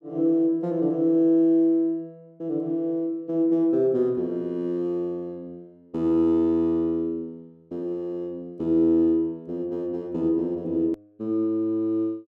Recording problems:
click at an edit; at 11 s

